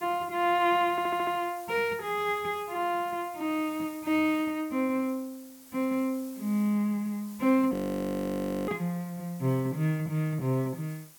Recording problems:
hiss; slope 0 dB per octave, SNR 21 dB
stutter; at 1 s
frozen audio; at 7.5 s for 1 s

